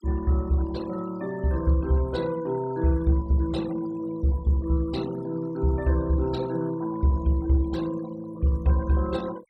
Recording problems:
denoising artefacts; signal-to-artefact ratio 21 dB

